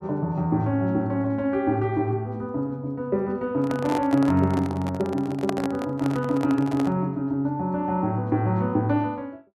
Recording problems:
handling noise; from 3.5 to 7 s; peak +1 dB vs average level

